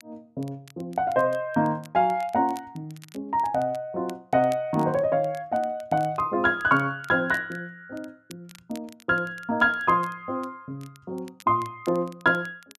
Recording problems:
crackling; vinyl, SNR 27 dB

